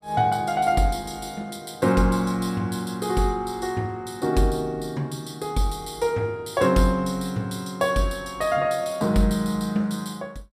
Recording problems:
none

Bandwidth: 15 kHz